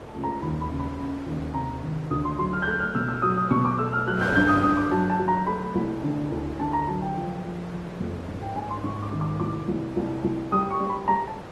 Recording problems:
lossy compression; Opus, log-spectral distance 2 dB
wind on the microphone; below 1 kHz, SNR 11 dB

